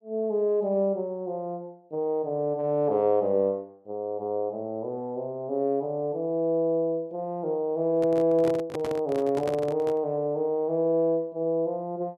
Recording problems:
microphone handling noise; from 8 to 10 s; peak -2 dB vs average level

